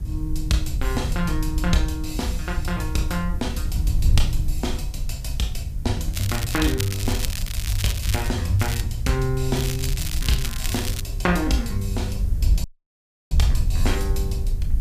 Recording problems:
background hiss; slope 0 dB per octave, SNR 25 dB
wind on the microphone; below 76 Hz, SNR 1 dB
crackle; from 6 to 8.5 s, at 8.5 s and from 9.5 to 11 s; loose cable, SNR 5 dB
dropout; at 13 s for 0.5 s

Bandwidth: 15 kHz